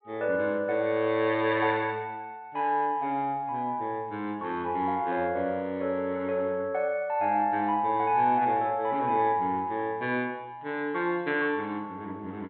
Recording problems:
treble missing; nothing above 4 kHz

